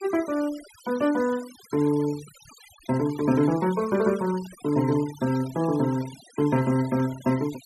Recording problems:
denoising artefacts; signal-to-artefact ratio 18 dB

